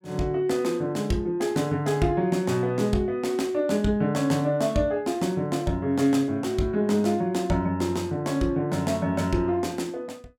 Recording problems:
none

